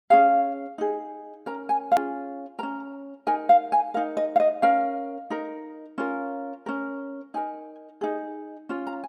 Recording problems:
hard cut with a click; at 2 s

